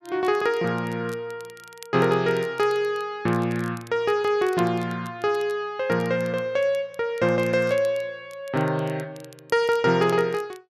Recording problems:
crackle; vinyl, SNR 26 dB

